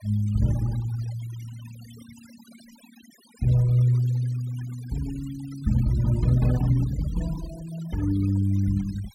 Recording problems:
denoising artefacts; signal-to-artefact ratio 20 dB

